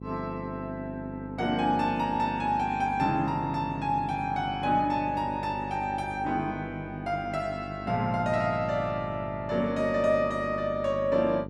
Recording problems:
hum; 50 Hz, harmonics up to 850 Hz, SNR 11 dB

